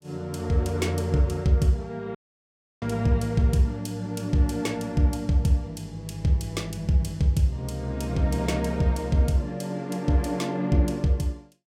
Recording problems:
audio cutting out; at 2 s for 0.5 s

